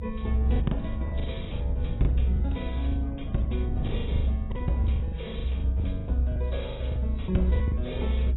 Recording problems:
lossy compression; AAC, log-spectral distance 3 dB, nothing above 3.9 kHz
rumble; below 74 Hz, strongest tone 64 Hz, SNR -5 dB
packet loss; 16% of the sound replaced, filled with the last packet

